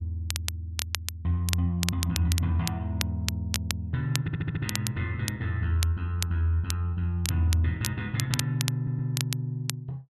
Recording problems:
crackling; vinyl, SNR 6 dB
audio stuttering; at 4 s and at 9 s

